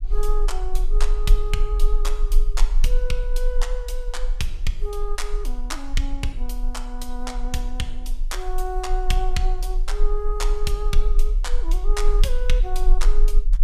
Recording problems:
low-frequency rumble; below 34 Hz, strongest tone 20 Hz, SNR -5 dB

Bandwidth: 15.5 kHz